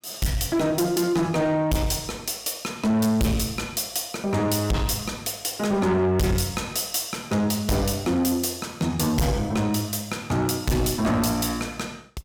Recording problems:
distortion; soft clipping, signal-to-distortion ratio 7 dB

